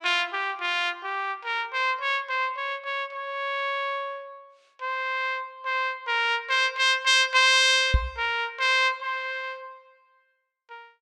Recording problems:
microphone thump; at 8 s; peak +5 dB vs average level

